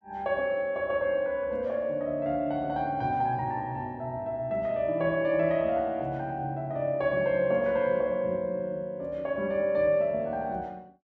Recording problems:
none

